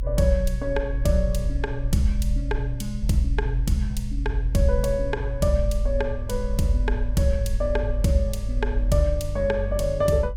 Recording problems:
rumble; below 48 Hz, strongest tone 46 Hz, SNR 3 dB

